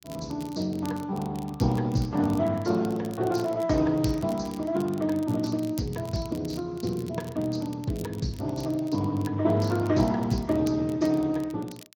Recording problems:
codec artefacts; Speex, log-spectral distance 3 dB
crackling; vinyl, SNR 22 dB

